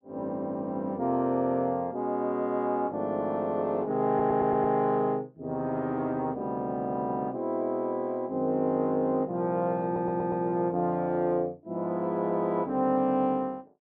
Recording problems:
audio stuttering; at 4 s and at 10 s

